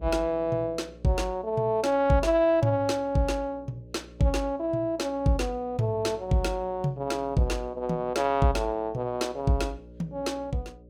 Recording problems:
electrical hum; 60 Hz, harmonics up to 600 Hz, SNR 23 dB

